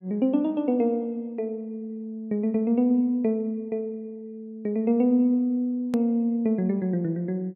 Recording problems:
hard cut with a click; at 6 s

